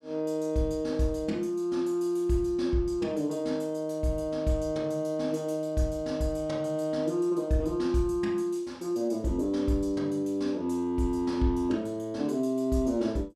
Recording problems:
none

